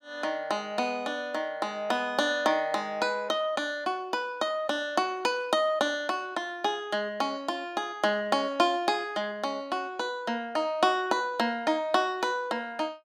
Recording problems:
none

